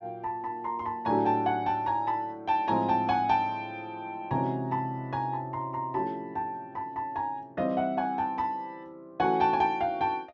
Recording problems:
treble missing; nothing above 7.1 kHz

